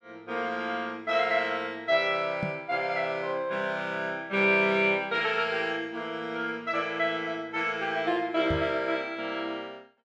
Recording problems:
microphone bump; at 2.5 s and at 8.5 s; peak -1 dB vs average level

